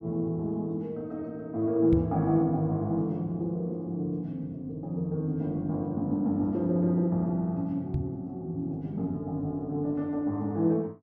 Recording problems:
microphone bump; at 2 s and at 8 s; peak +4 dB vs average level

